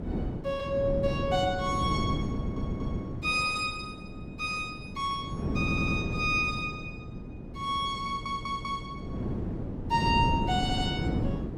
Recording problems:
wind noise; below 300 Hz, SNR 4 dB
audio stuttering; 4 times, first at 2.5 s

